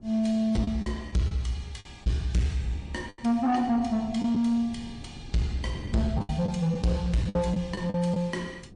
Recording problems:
codec artefacts; MP3, log-spectral distance 2 dB, nothing above 8.7 kHz
distorted audio; soft clipping, signal-to-distortion ratio 11 dB
wind noise; below 220 Hz, SNR 17 dB
lost packets; 7% of the sound replaced, filled with the last packet

